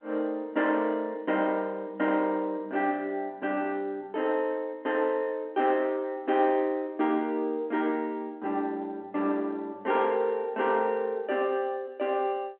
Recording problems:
phone line; 240 Hz to 3.5 kHz, G.711

